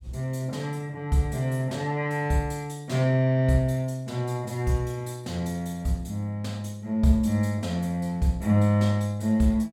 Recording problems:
none

